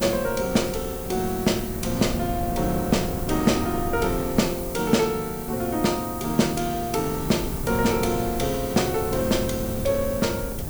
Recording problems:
background hiss; SNR 11 dB
wind noise; below 280 Hz, SNR 9 dB

